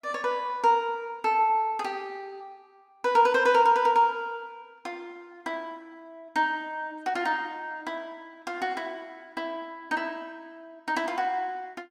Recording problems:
none

